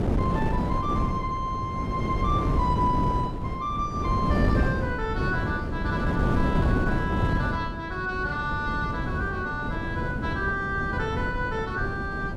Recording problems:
wind on the microphone; below 290 Hz, SNR -1 dB

